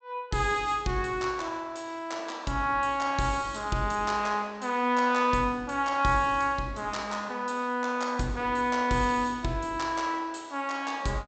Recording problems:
treble missing; nothing above 8 kHz

